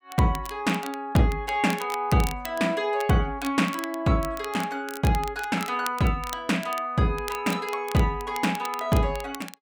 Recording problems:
crackling; vinyl, SNR 15 dB

